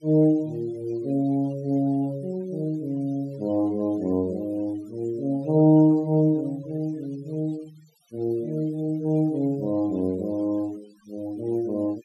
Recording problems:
noise reduction artefacts; signal-to-artefact ratio 26 dB

